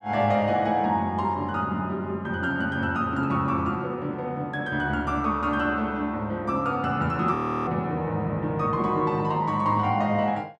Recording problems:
audio freezing; at 7.5 s

